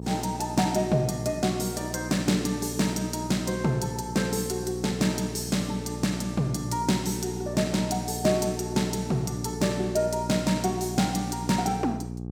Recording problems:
electrical hum; 60 Hz, harmonics up to 780 Hz, SNR 9 dB

